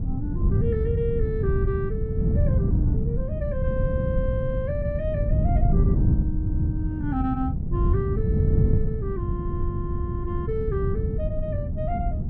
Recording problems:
wind on the microphone; below 150 Hz, SNR -6 dB

